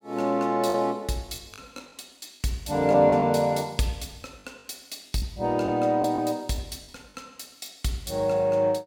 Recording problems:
lost packets; 6% of the sound replaced, filled with the last packet

